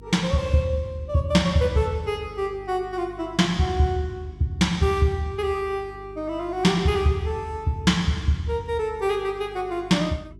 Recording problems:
hum; 50 Hz, harmonics up to 400 Hz, SNR 21 dB

